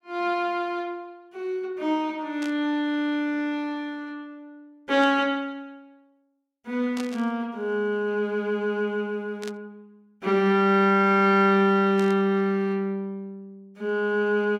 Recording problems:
static burst; 5 times, first at 2.5 s; peak -9 dB vs average level

